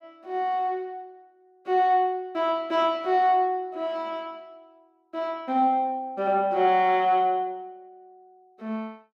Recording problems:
none

